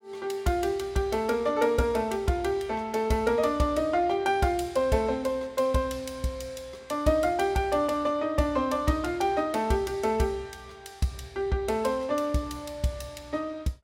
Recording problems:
none

